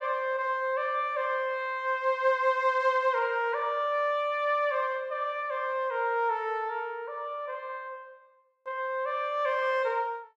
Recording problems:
none

